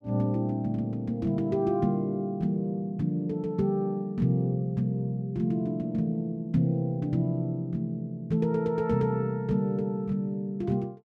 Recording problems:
none

